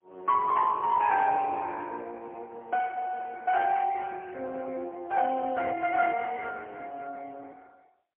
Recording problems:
phone line; 300 Hz to 2.8 kHz, AMR-NB, then MP3

